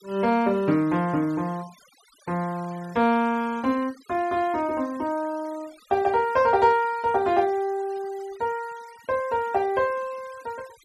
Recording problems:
denoising artefacts; signal-to-artefact ratio 24 dB

